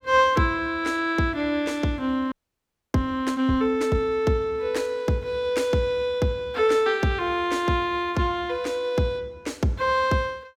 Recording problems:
audio freezing; at 2.5 s for 0.5 s

